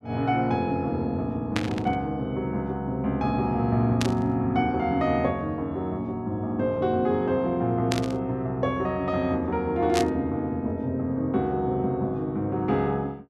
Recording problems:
static burst; 4 times, first at 1.5 s; peak +2 dB vs average level

